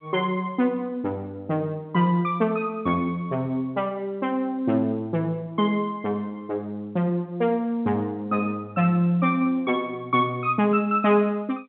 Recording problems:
phone line; 150 Hz to 3.5 kHz, G.711

